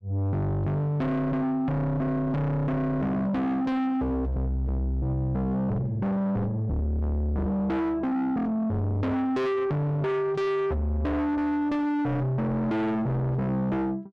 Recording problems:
distorted audio; soft clipping, signal-to-distortion ratio 6 dB

